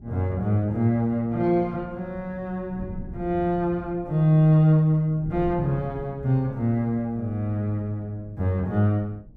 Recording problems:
wind on the microphone; below 180 Hz, SNR 18 dB

